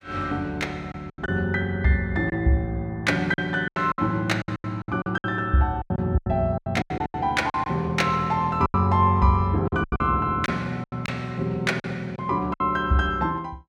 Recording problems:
lost packets; 12% of the sound replaced, filled with silence

